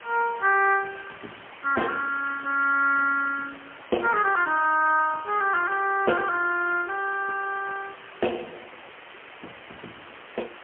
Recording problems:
telephone audio; 300 Hz to 2.9 kHz, AMR-NB, then MP3
hiss; SNR 19 dB

